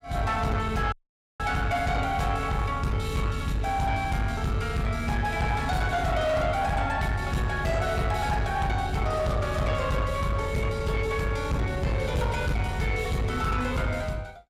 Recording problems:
distorted audio; soft clipping, signal-to-distortion ratio 10 dB
audio cutting out; at 1 s

